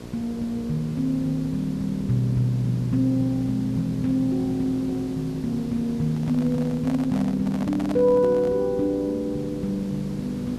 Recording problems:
electrical hum; 60 Hz, harmonics up to 1.1 kHz, SNR 15 dB
background hiss; slope -5 dB per octave, SNR 18 dB
handling noise; from 6 to 8.5 s; peak -6 dB vs average level

